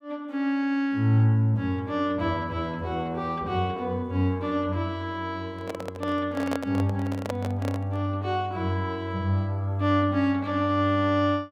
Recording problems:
microphone handling noise; from 5.5 to 8 s; peak 0 dB vs average level

